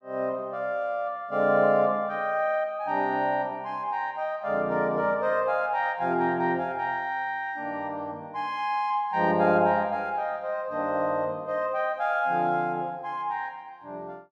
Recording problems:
none

